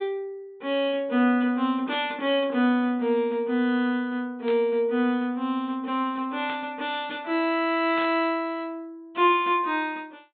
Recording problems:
treble missing; nothing above 4 kHz
burst of static; 4 times, first at 2 s; peak -8 dB vs average level

